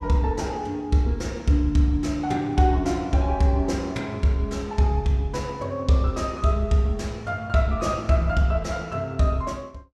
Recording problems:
none

